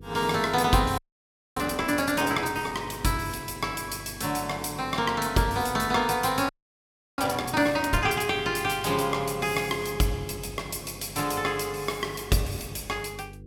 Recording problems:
hum; 50 Hz, harmonics up to 500 Hz, SNR 19 dB
frozen audio; at 1 s for 0.5 s and at 6.5 s for 0.5 s

